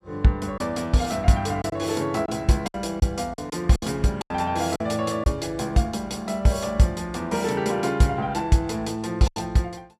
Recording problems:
lost packets; 5% of the sound replaced, filled with silence

